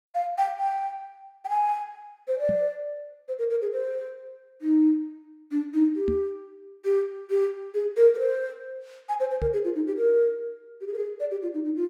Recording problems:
microphone thump; at 2.5 s, at 6 s and at 9.5 s; peak -1 dB vs average level

